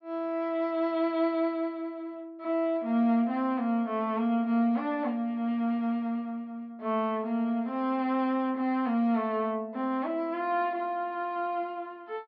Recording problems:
low-pass filter; nothing above 5.5 kHz

